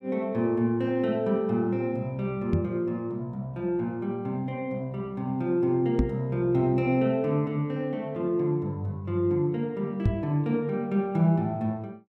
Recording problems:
microphone bump; at 2.5 s, at 6 s and at 10 s; peak +6 dB vs average level

